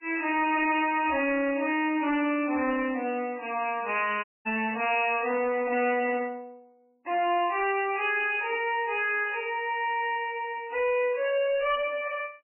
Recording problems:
lossy codec; MP3, log-spectral distance 5 dB, nothing above 2.7 kHz
distorted audio; hard clipping, signal-to-distortion ratio 9 dB
dropout; at 4 s

